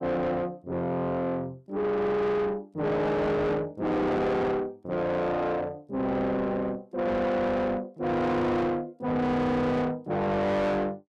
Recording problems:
distorted audio; soft clipping, signal-to-distortion ratio 6 dB

